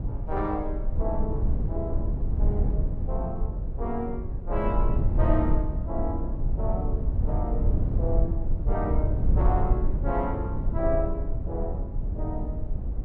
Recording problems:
low-frequency rumble; below 82 Hz, SNR -4 dB

